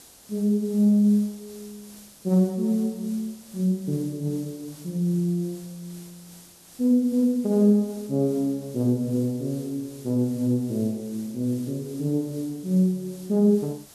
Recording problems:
hiss; SNR 22 dB

